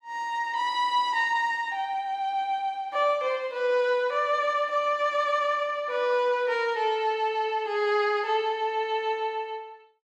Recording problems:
none

